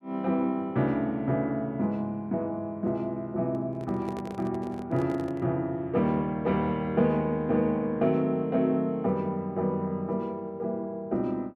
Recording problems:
microphone handling noise; from 3.5 to 5.5 s; peak -8 dB vs average level

